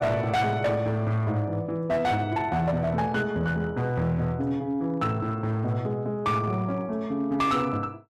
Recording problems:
distorted audio; hard clipping, signal-to-distortion ratio 12 dB

